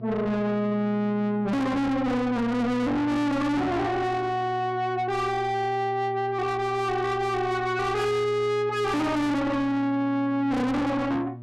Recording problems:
distortion; soft clipping, signal-to-distortion ratio 6 dB
electrical hum; 60 Hz, harmonics up to 600 Hz, SNR 15 dB

